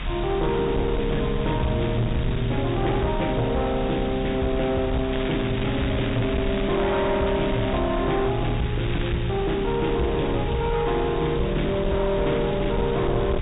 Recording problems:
treble missing; nothing above 4 kHz
distortion; soft clipping, signal-to-distortion ratio 10 dB
hiss; SNR 12 dB
low-frequency rumble; below 110 Hz, strongest tone 38 Hz, SNR 8 dB
crackle; from 5 to 8 s and at 9 s; loose cable, SNR 12 dB

